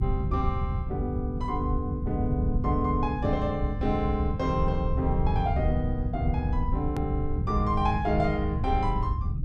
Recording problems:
low-frequency rumble; below 110 Hz, SNR 1 dB
edit click; at 7 s

